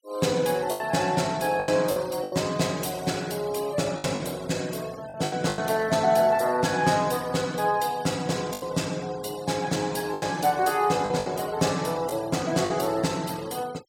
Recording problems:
noise reduction artefacts; signal-to-artefact ratio 20 dB
lost packets; 6% of the sound replaced, filled with the last packet

